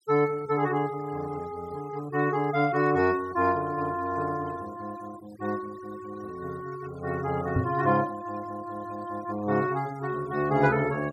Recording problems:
noise reduction artefacts; signal-to-artefact ratio 19 dB
knock on the microphone; at 7.5 s; peak +4 dB vs average level

